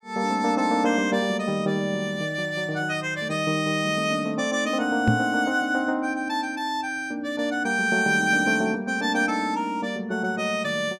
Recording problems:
microphone bump; at 5 s; peak +7 dB vs average level

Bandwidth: 15 kHz